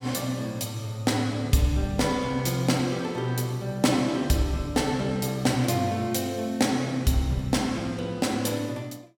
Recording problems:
none

